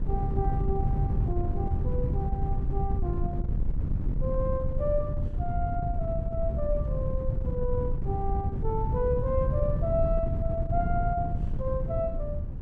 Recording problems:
wind noise; below 120 Hz, SNR -3 dB

